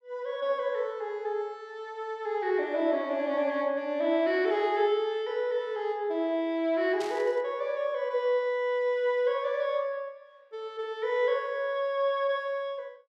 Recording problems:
burst of static; at 7 s; peak -8 dB vs average level

